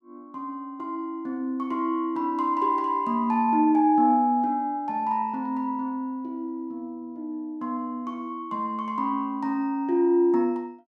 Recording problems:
none

